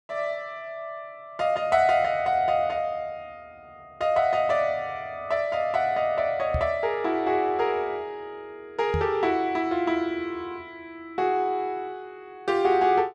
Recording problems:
microphone thump; at 6.5 s and at 9 s; peak 0 dB vs average level

